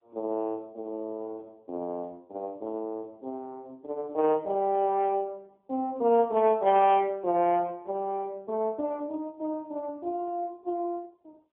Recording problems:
phone line; 220 Hz to 3.3 kHz, AMR-NB

